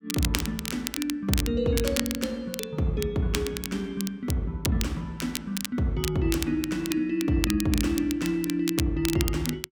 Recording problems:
crackle; vinyl, SNR 7 dB

